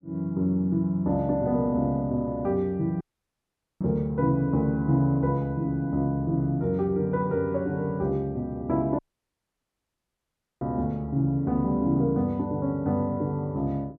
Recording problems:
audio cutting out; at 3 s for 1 s and at 9 s for 1.5 s

